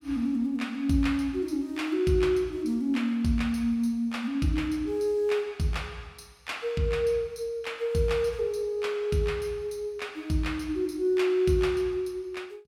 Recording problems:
none

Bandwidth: 16.5 kHz